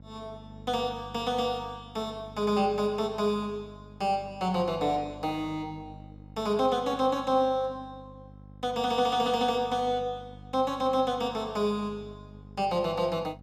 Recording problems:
electrical hum; 50 Hz, harmonics up to 800 Hz, SNR 19 dB

